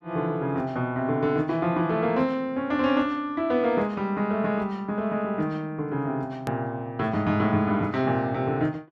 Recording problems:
edit click; at 6.5 s

